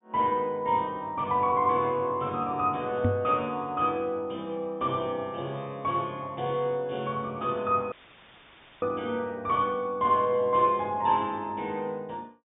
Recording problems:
low-pass filter; nothing above 3.6 kHz
knock on the microphone; at 3 s; peak +5 dB vs average level
dropout; at 8 s for 1 s; filled with static

